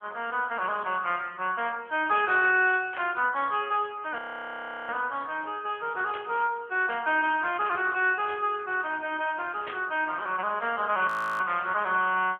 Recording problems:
telephone audio; 320 Hz to 3.3 kHz, AMR-NB
static burst; at 3 s, at 6 s and at 9.5 s; peak -6 dB vs average level
frozen audio; at 4 s for 0.5 s and at 11 s

